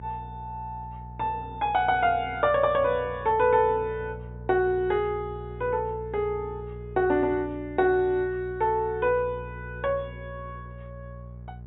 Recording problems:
low-pass filter; nothing above 4 kHz
mains hum; 60 Hz, harmonics up to 600 Hz, SNR 15 dB

